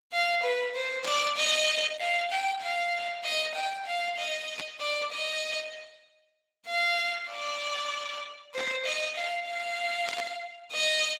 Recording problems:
lossy compression; Opus, log-spectral distance 6 dB
burst of static; 4 times, first at 1 s; peak -4 dB vs average level

